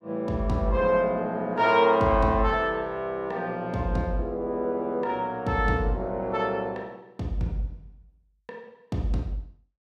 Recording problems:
none

